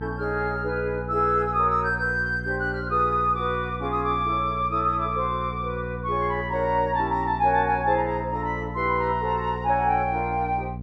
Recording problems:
electrical hum; 60 Hz, harmonics up to 540 Hz, SNR 10 dB

